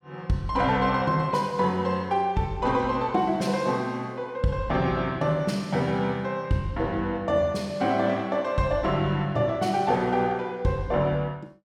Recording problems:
none

